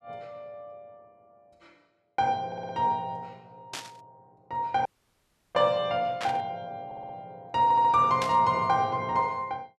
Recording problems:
audio stuttering; at 2.5 s, at 7 s and at 7.5 s
static burst; at 3.5 s, at 6 s and at 8 s; peak -4 dB vs average level
audio cutting out; at 5 s for 0.5 s

